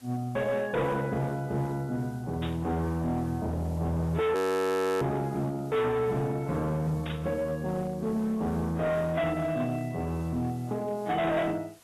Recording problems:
lossy codec; AAC, log-spectral distance 2 dB, nothing above 13.1 kHz
distorted audio; hard clipping, signal-to-distortion ratio 8 dB
background hiss; slope -1 dB per octave, SNR 26 dB
static burst; at 2.5 s and at 7 s; peak -6 dB vs average level
audio freezing; at 4.5 s for 0.5 s

